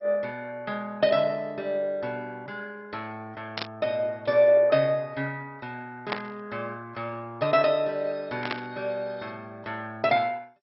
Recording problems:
lossy codec; MP2, log-spectral distance 3 dB, nothing above 5 kHz
burst of static; at 3.5 s, at 6 s and at 8.5 s; peak +2 dB vs average level

